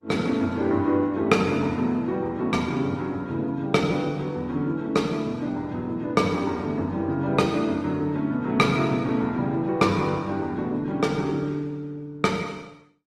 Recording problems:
codec artefacts; Opus, log-spectral distance 2 dB, nothing above 16.6 kHz

